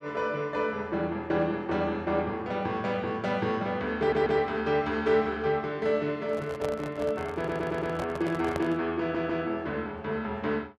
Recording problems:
stutter; at 4 s, at 7.5 s and at 9 s
microphone handling noise; from 6.5 to 9 s; peak -2 dB vs average level

